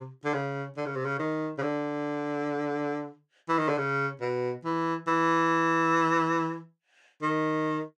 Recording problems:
none

